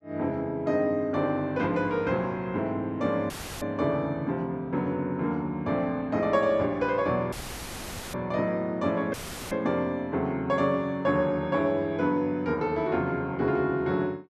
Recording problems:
audio cutting out; at 3.5 s, at 7.5 s for 1 s and at 9 s; filled with static

